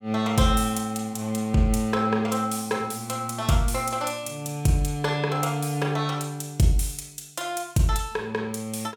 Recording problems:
none

